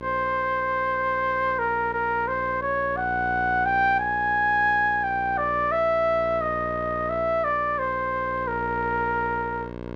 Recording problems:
electrical hum; 60 Hz, harmonics up to 2.6 kHz, SNR 13 dB

